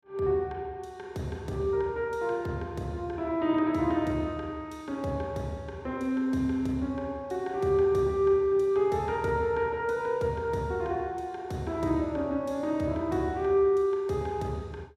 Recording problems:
none

